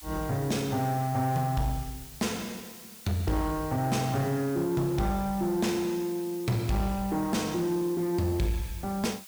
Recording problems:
distortion; soft clipping, signal-to-distortion ratio 11 dB
background hiss; slope +3 dB per octave, SNR 16 dB

